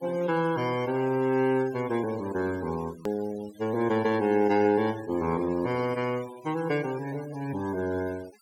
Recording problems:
noise reduction artefacts; signal-to-artefact ratio 18 dB
edit click; at 3 s

